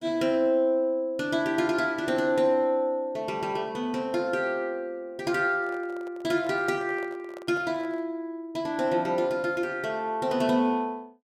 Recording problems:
microphone handling noise; from 5.5 to 8 s; peak -12 dB vs average level

